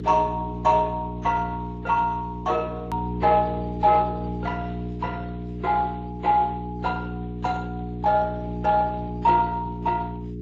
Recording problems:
codec artefacts; Speex, then AAC, log-spectral distance 2 dB
hum; 60 Hz, harmonics up to 420 Hz, SNR 8 dB
edit click; at 3 s

